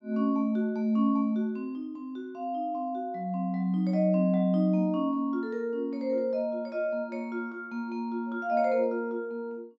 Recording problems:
low-pass filter; nothing above 7.8 kHz

